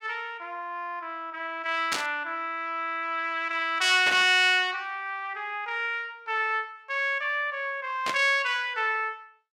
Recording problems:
static burst; at 2 s, at 4 s and at 8 s; peak +2 dB vs average level

